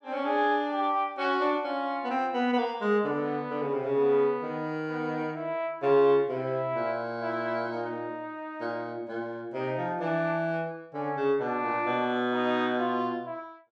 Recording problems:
none

